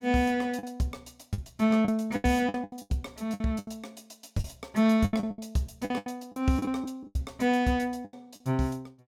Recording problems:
packet loss; 15% of the sound replaced, filled with the last packet

